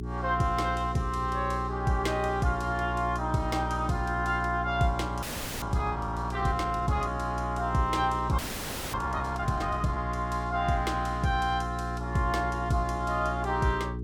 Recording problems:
electrical hum; 60 Hz, harmonics up to 420 Hz, SNR 6 dB
audio freezing; at 5 s and at 8.5 s for 0.5 s

